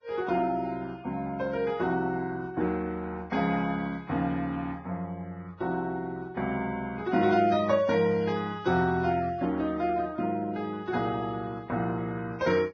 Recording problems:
lossy compression; Vorbis, log-spectral distance 2 dB, nothing above 6.3 kHz

